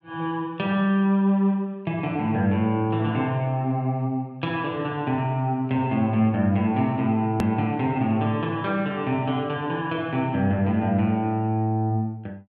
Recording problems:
hard cut with a click; at 7.5 s

